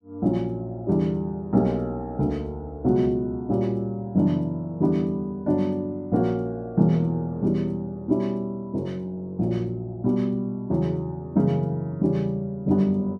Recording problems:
none

